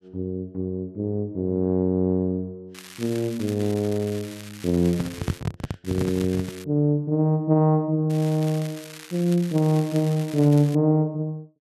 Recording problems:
crackling; from 2.5 to 5.5 s, at 6 s and from 8 to 11 s; loose cable, SNR 18 dB
handling noise; from 5 to 6.5 s; peak +2 dB vs average level

